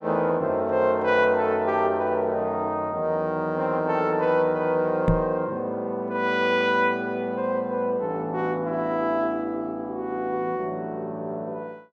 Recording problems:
microphone bump; at 5 s; peak +6 dB vs average level

